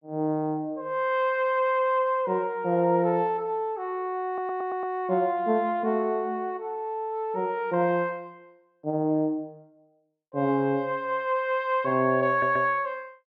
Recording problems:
audio stuttering; at 4.5 s and at 12 s

